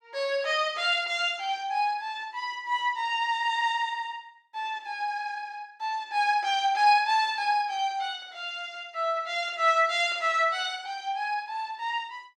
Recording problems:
none

